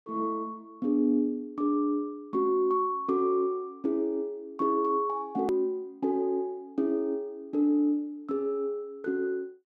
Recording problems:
hard cut with a click; at 5.5 s

